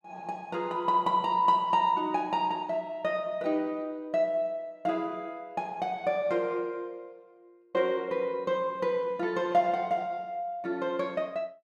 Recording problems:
none

